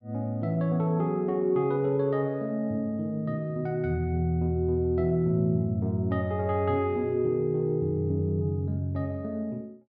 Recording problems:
none

